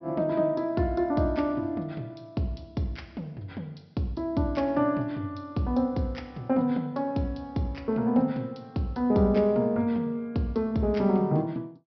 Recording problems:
low-pass filter; nothing above 5.5 kHz

